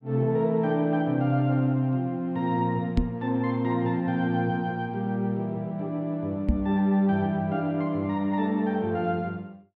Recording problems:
microphone thump; at 3 s and at 6.5 s; peak +6 dB vs average level

